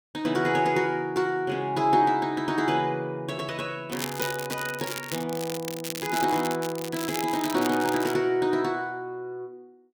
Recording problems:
crackle; from 4 to 8 s; loose cable, SNR 9 dB

